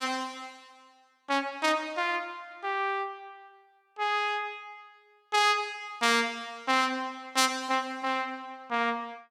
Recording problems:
none

